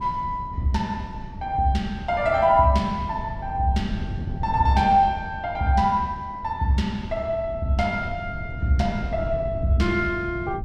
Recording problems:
wind noise; below 150 Hz, SNR 11 dB

